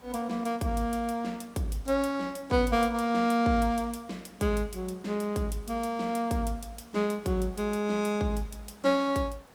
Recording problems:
background hiss; SNR 27 dB

